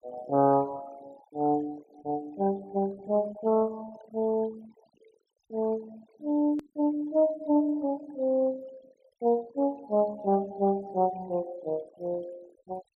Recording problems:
noise reduction artefacts; signal-to-artefact ratio 23 dB
click at an edit; at 6.5 s

